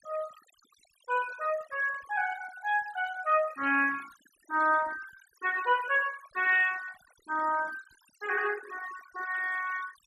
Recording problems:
denoising artefacts; signal-to-artefact ratio 17 dB

